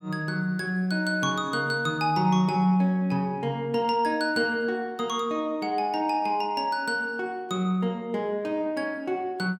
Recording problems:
none

